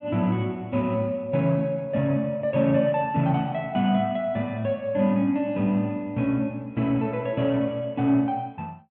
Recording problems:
treble cut off; nothing above 4 kHz

